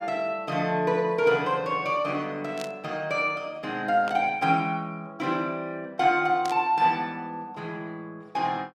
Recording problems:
static burst; at 2.5 s, at 4 s and at 6.5 s; peak -6 dB vs average level

